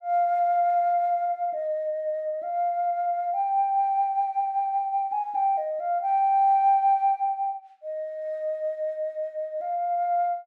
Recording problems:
none

